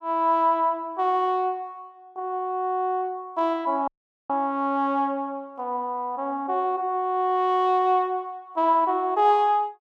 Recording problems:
dropout; at 4 s

